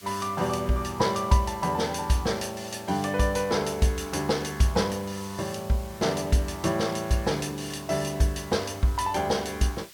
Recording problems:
background hiss; SNR 20 dB

